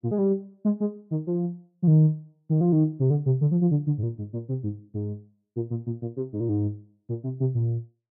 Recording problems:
none

